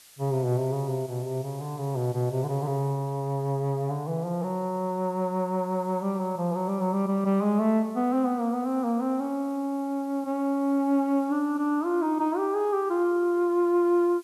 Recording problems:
background hiss; slope +2 dB per octave, SNR 27 dB

